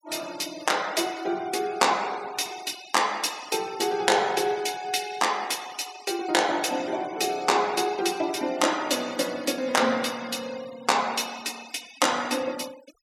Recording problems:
noise reduction artefacts; signal-to-artefact ratio 20 dB

